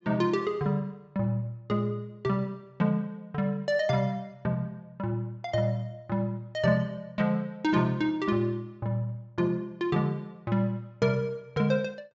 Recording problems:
low-pass filter; nothing above 8 kHz

